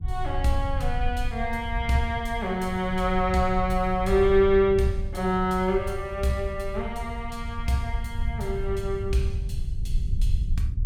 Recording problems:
low-frequency rumble; below 72 Hz, SNR 6 dB

